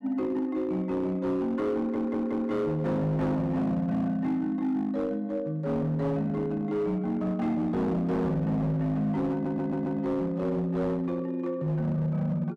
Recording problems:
distortion; hard clipping, signal-to-distortion ratio 11 dB
stutter; at 2 s and at 9.5 s

